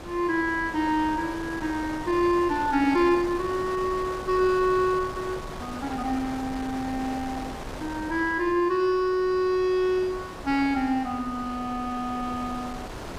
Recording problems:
wind on the microphone; below 1.2 kHz, SNR 12 dB

